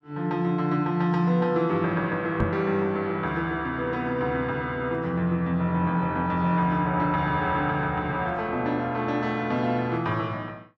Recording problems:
microphone bump; at 2.5 s; peak +3 dB vs average level

